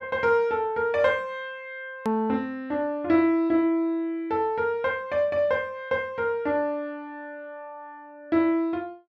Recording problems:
hard cut with a click; at 2 s

